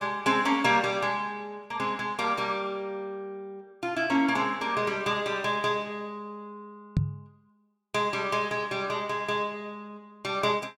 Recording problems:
knock on the microphone; at 7 s; peak +6 dB vs average level

